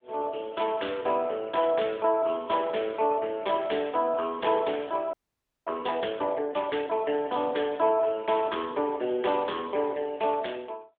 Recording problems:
phone line; 260 Hz to 3.5 kHz, AMR-NB
audio freezing; at 5 s for 0.5 s

